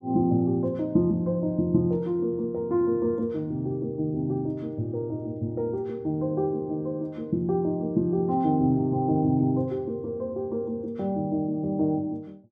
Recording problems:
none

